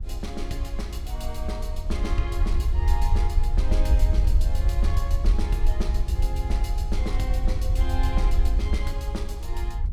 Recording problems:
wind on the microphone; below 62 Hz, SNR -8 dB

